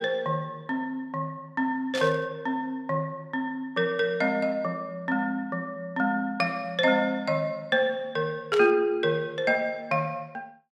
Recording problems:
static burst; at 2 s and at 8.5 s; peak -2 dB vs average level

